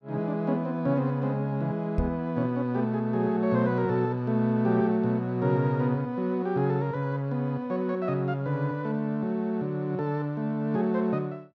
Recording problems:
microphone thump; at 2 s; peak +3 dB vs average level

